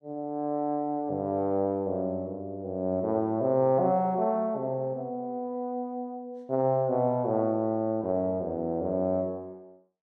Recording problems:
none

